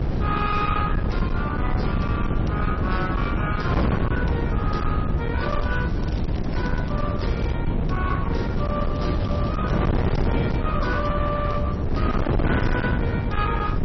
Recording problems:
codec artefacts; MP3, log-spectral distance 2 dB, nothing above 5.8 kHz
distorted audio; hard clipping, uneven, signal-to-distortion ratio 6 dB
rumble; below 110 Hz, SNR 3 dB
wind on the microphone; below 310 Hz, SNR -3 dB
crackling; from 5.5 to 7.5 s and from 8.5 to 11 s; loose cable, SNR 18 dB

